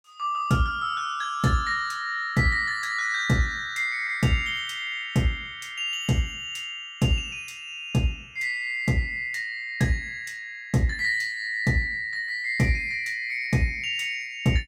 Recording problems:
none

